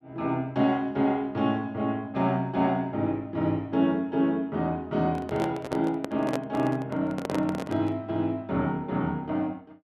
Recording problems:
microphone handling noise; from 5 to 8 s; peak 0 dB vs average level

